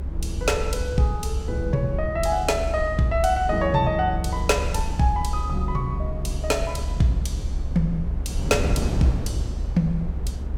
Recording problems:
low-frequency rumble; below 68 Hz, SNR 6 dB
wind noise; below 250 Hz, SNR 10 dB

